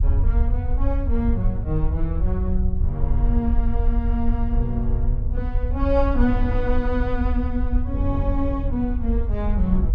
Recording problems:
low-frequency rumble; below 66 Hz, SNR -2 dB

